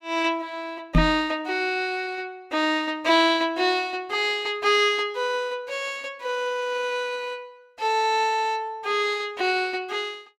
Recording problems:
knock on the microphone; at 1 s; peak +8 dB vs average level

